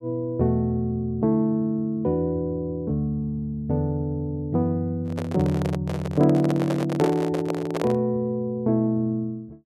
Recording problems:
microphone handling noise; from 5 to 8 s; peak 0 dB vs average level

